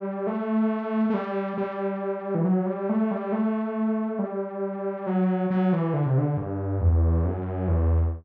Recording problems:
treble missing; nothing above 8 kHz

